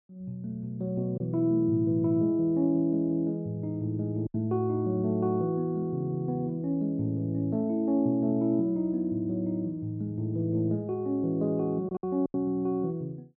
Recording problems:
packet loss; 1.9% of the sound replaced, filled with silence

